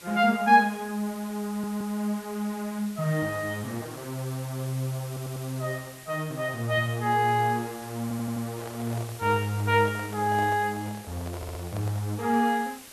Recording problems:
hiss; slope -1 dB per octave, SNR 17 dB
stutter; 4 times, first at 1.5 s
handling noise; from 8.5 to 12 s; peak -8 dB vs average level

